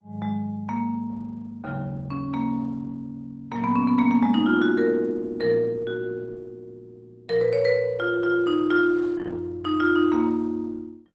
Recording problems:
codec artefacts; Opus, log-spectral distance 2 dB

